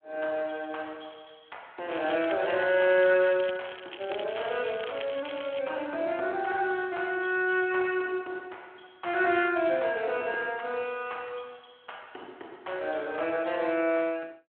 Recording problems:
telephone audio; 260 Hz to 3.4 kHz, Speex
crackling; from 2 to 5.5 s; loose cable, SNR 14 dB

